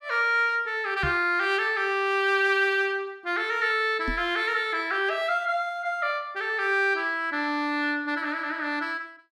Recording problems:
knock on the microphone; at 1 s and at 4 s; peak -3 dB vs average level

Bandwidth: 14.5 kHz